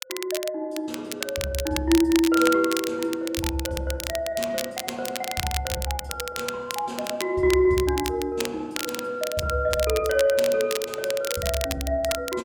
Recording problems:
crackling; vinyl, SNR 7 dB

